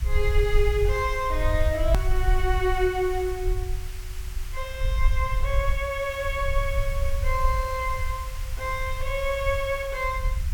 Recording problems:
hiss; SNR 15 dB
low-frequency rumble; below 62 Hz, SNR 2 dB
edit click; at 2 s

